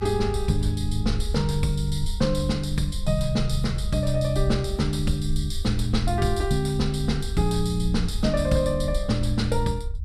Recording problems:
rumble; below 74 Hz, SNR 6 dB

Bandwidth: 14.5 kHz